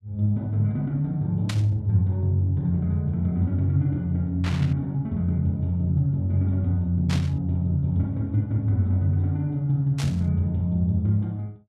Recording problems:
static burst; 4 times, first at 1.5 s; peak -4 dB vs average level

